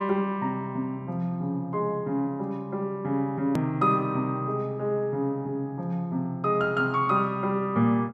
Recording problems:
edit click; at 3.5 s

